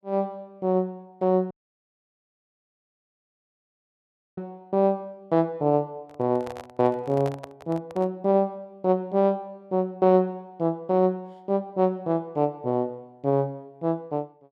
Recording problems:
dropout; at 1.5 s for 3 s
microphone handling noise; from 6 to 8 s; peak -7 dB vs average level

